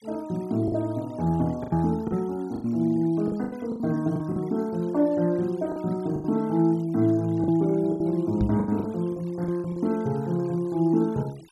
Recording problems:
noise reduction artefacts; signal-to-artefact ratio 27 dB
packet loss; 9% of the sound replaced, filled with the last packet
microphone bump; at 8.5 s; peak +3 dB vs average level

